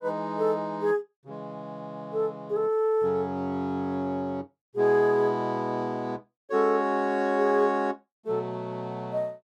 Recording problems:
none

